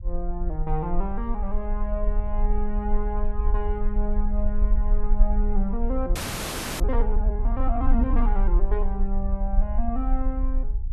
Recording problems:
low-frequency rumble; below 42 Hz, strongest tone 28 Hz, SNR -4 dB
frozen audio; at 6 s for 0.5 s

